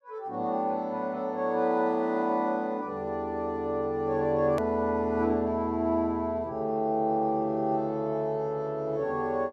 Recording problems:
hard cut with a click; at 4.5 s

